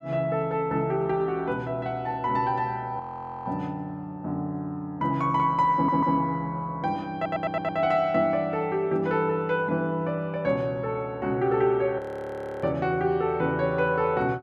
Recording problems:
audio freezing; at 3 s and at 12 s for 0.5 s
stutter; at 6 s and at 7 s

